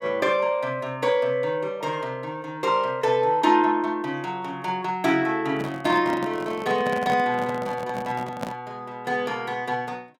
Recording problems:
handling noise; from 5.5 to 8.5 s; peak -3 dB vs average level

